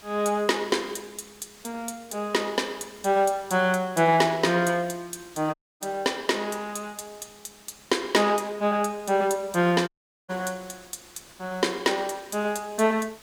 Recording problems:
hiss; slope -1 dB per octave, SNR 24 dB
audio cutting out; at 5.5 s and at 10 s

